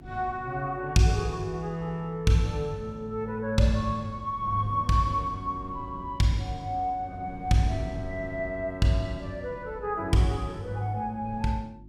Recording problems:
electrical hum; 50 Hz, harmonics up to 350 Hz, SNR 21 dB
wind noise; below 190 Hz, SNR 17 dB

